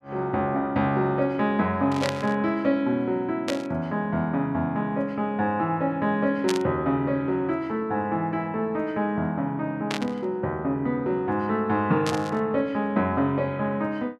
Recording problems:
burst of static; 5 times, first at 2 s; peak 0 dB vs average level

